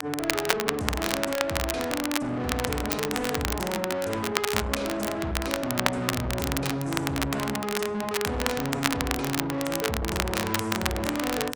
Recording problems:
lossy codec; AAC, log-spectral distance 2 dB
distorted audio; soft clipping, signal-to-distortion ratio 7 dB
crackling; vinyl, SNR 1 dB

